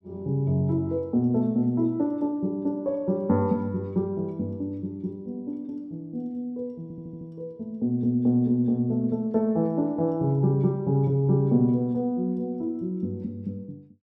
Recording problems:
audio stuttering; at 7 s

